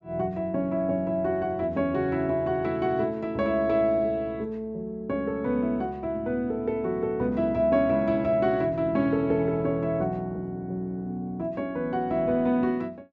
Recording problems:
none

